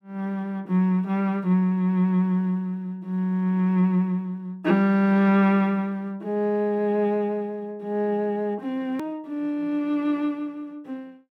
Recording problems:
hard cut with a click; at 9 s

